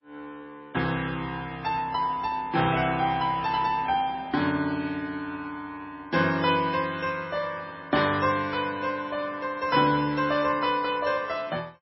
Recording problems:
codec artefacts; MP3, log-spectral distance 3 dB, nothing above 4.8 kHz

